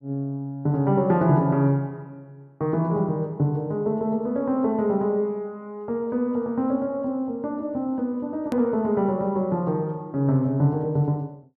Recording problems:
hard cut with a click; at 8.5 s

